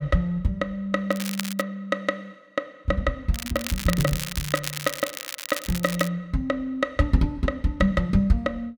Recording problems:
crackle; at 1 s, from 3.5 to 4.5 s and from 4.5 to 6 s; loose cable, SNR 7 dB

